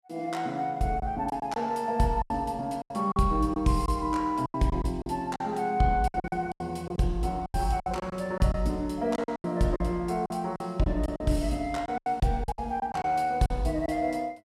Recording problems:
lost packets; 12% of the sound replaced, filled with silence

